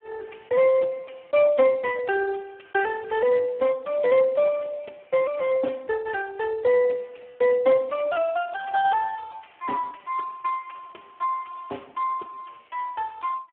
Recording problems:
telephone audio; 280 Hz to 2.3 kHz, Speex

